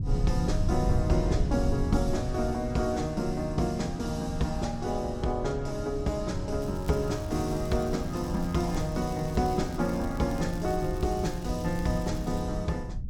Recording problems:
low-frequency rumble; below 110 Hz, SNR 5 dB
crackling; from 6.5 to 12 s; loose cable, SNR 21 dB

